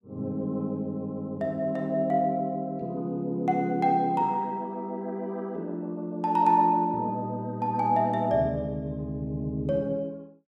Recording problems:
none

